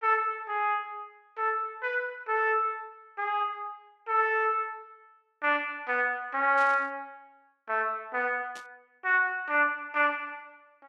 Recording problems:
burst of static; at 6.5 s and at 8.5 s; peak -14 dB vs average level

